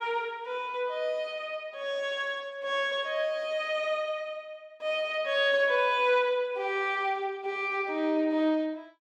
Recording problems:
none

